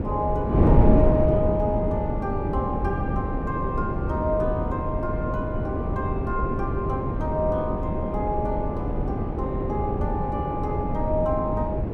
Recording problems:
wind on the microphone; below 310 Hz, SNR -2 dB

